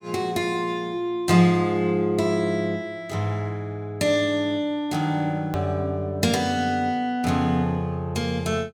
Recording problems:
hard cut with a click; at 5.5 s

